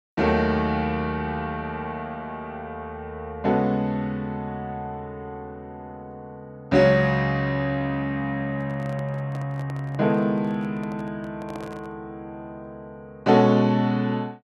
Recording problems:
handling noise; from 8.5 to 12 s; peak -10 dB vs average level

